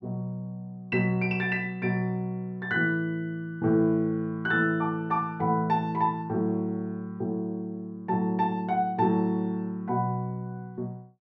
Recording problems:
none

